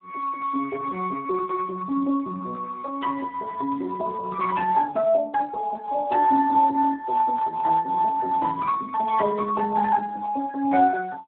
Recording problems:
phone line; 240 Hz to 2 kHz, Speex

